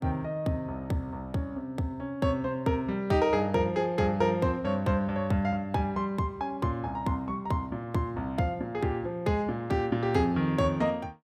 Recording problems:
none

